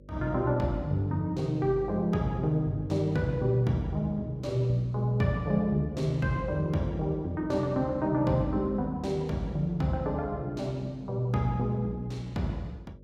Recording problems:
electrical hum; 50 Hz, harmonics up to 600 Hz, SNR 21 dB

